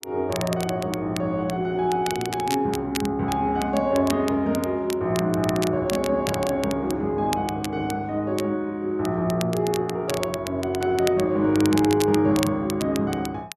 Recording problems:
crackling; vinyl, SNR 12 dB

